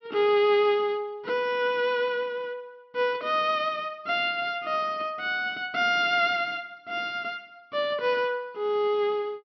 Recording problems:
treble missing; nothing above 6 kHz

